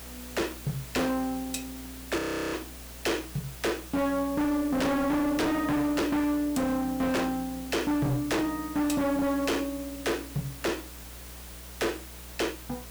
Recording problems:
distortion; hard clipping, signal-to-distortion ratio 6 dB
hum; 60 Hz, harmonics up to 660 Hz, SNR 19 dB
background hiss; slope -1 dB per octave, SNR 14 dB
frozen audio; at 2 s

